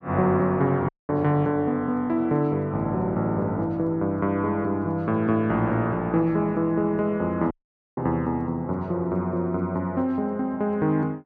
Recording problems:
dropout; at 1 s and at 7.5 s

